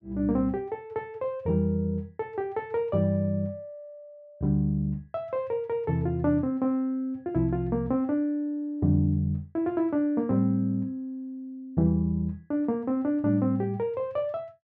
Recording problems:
none

